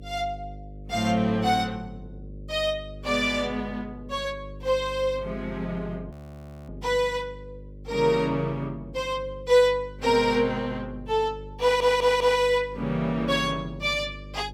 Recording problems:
hum; 50 Hz, harmonics up to 600 Hz, SNR 17 dB
frozen audio; at 6 s for 0.5 s
audio stuttering; at 12 s

